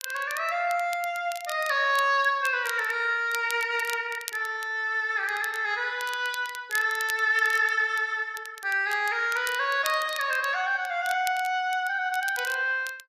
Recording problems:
crackling; vinyl, SNR 16 dB

